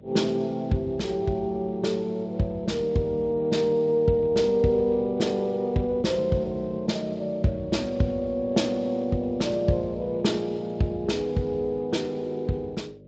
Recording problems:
lossy codec; Speex, log-spectral distance 2 dB, nothing above 7.6 kHz
hum; 50 Hz, harmonics up to 600 Hz, SNR 25 dB

